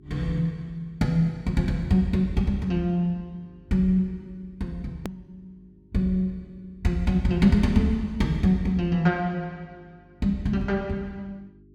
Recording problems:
mains hum; 50 Hz, harmonics up to 400 Hz, SNR 29 dB
edit click; at 5 s

